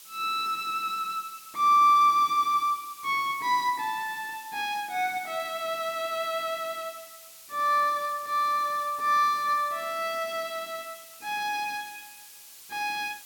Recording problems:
background hiss; SNR 19 dB

